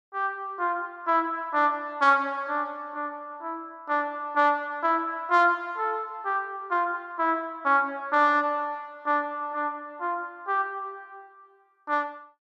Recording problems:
none

